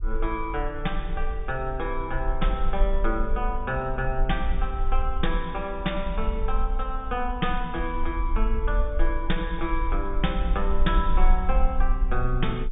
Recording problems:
treble missing; nothing above 3.7 kHz
rumble; below 42 Hz, strongest tone 20 Hz, SNR 0 dB

